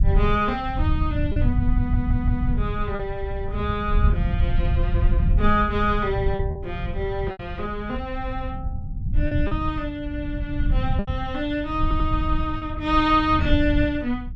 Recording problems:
low-frequency rumble; below 94 Hz, SNR 1 dB
lost packets; 3% of the sound replaced, filled with repeated pitch periods
audio stuttering; at 2 s and at 12 s

